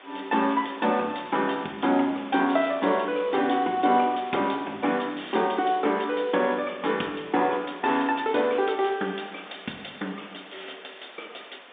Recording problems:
telephone audio; 190 Hz to 3.6 kHz, G.711
background hiss; SNR 20 dB

